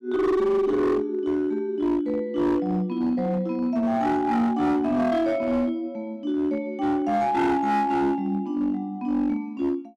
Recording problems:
distorted audio; hard clipping, uneven, signal-to-distortion ratio 10 dB

